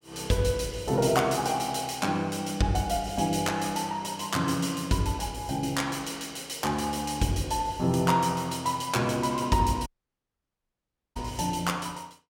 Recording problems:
dropout; at 10 s for 1.5 s

